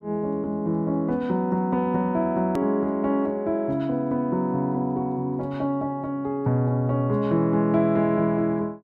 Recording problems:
edit click; at 2.5 s

